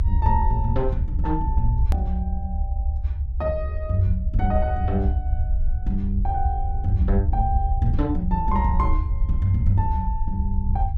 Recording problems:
low-frequency rumble; below 74 Hz, SNR -1 dB
click at an edit; at 2 s

